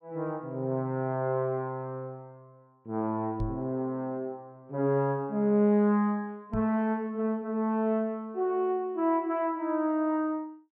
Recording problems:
knock on the microphone; at 3.5 s and at 6.5 s; peak -1 dB vs average level

